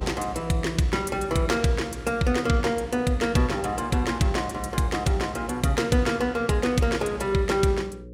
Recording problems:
hum; 60 Hz, harmonics up to 540 Hz, SNR 18 dB

